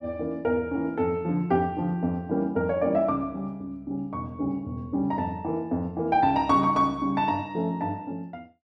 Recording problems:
none

